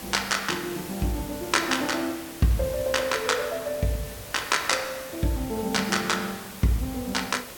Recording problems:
hiss; slope -3 dB per octave, SNR 12 dB

